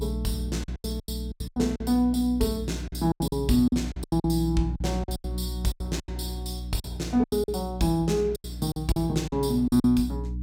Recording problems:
electrical hum; 60 Hz, harmonics up to 300 Hz, SNR 8 dB
packet loss; 15% of the sound replaced, filled with silence

